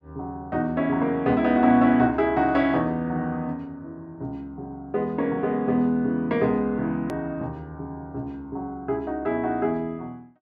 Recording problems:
edit click; at 7 s

